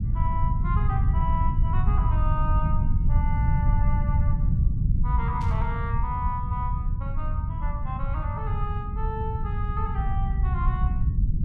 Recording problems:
low-frequency rumble; below 110 Hz, SNR -8 dB
burst of static; at 5.5 s; peak -8 dB vs average level

